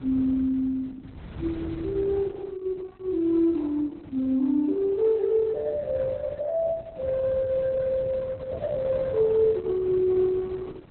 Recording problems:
lossy compression; Opus, log-spectral distance 2 dB, nothing above 4 kHz
wind on the microphone; below 210 Hz, SNR 17 dB

